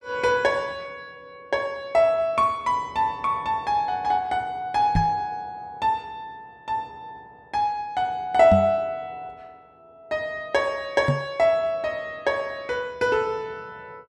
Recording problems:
microphone bump; at 5 s, at 8.5 s and at 11 s; peak +5 dB vs average level

